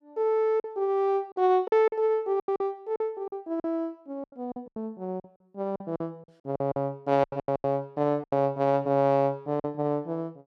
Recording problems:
packet loss; 12% of the sound replaced, filled with silence

